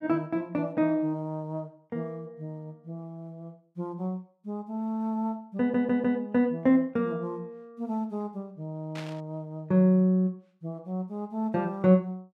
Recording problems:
audio stuttering; at 5.5 s
burst of static; at 9 s; peak -9 dB vs average level

